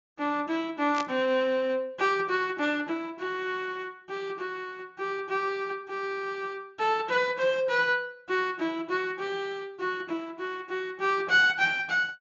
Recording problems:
treble missing; nothing above 7.4 kHz
burst of static; at 1 s; peak -5 dB vs average level

